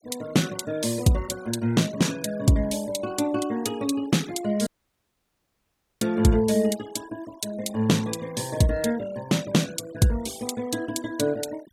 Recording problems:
noise reduction artefacts; signal-to-artefact ratio 19 dB
dropout; at 4.5 s for 1.5 s

